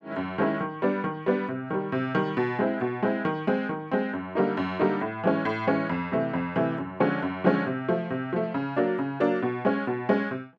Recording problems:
none

